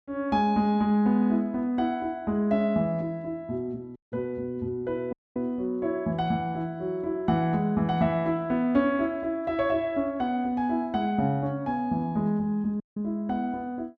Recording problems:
audio cutting out; at 4 s, at 5 s and at 13 s

